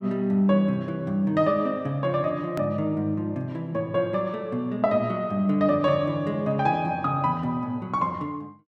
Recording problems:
click at an edit; at 2.5 s

